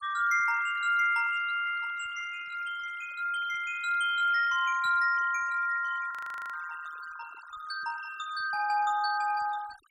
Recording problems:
denoising artefacts; signal-to-artefact ratio 17 dB
frozen audio; at 6 s

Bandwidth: 16 kHz